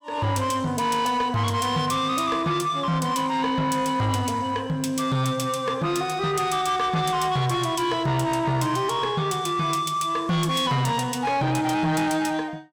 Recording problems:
distortion; soft clipping, signal-to-distortion ratio 11 dB

